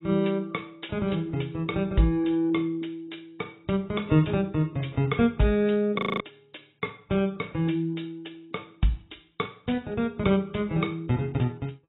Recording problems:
lossy compression; AAC, log-spectral distance 5 dB, nothing above 3.8 kHz
frozen audio; at 6 s

